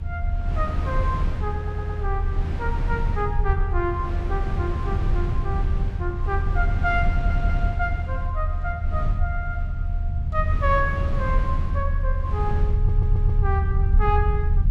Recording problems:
low-frequency rumble; below 80 Hz, strongest tone 34 Hz, SNR -4 dB
wind noise; below 170 Hz, SNR 4 dB
audio stuttering; at 1.5 s, at 7 s and at 13 s

